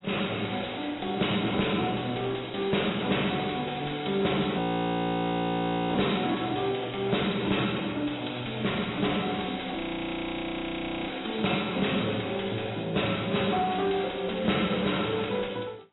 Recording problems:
lossy compression; AAC, log-spectral distance 12 dB, nothing above 3.9 kHz
distortion; soft clipping, signal-to-distortion ratio 9 dB
frozen audio; at 4.5 s for 1.5 s and at 10 s for 1.5 s

